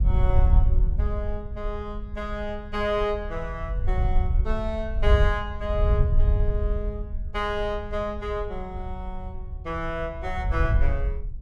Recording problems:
wind noise; below 72 Hz, SNR -3 dB

